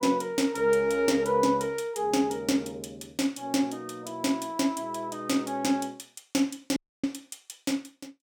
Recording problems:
dropout; at 7 s

